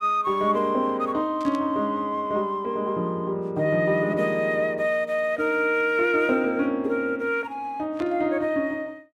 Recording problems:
burst of static; at 1.5 s and at 8 s; peak -13 dB vs average level

